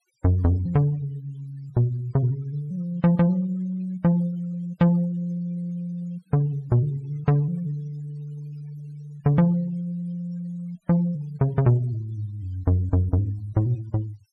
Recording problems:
noise reduction artefacts; signal-to-artefact ratio 27 dB

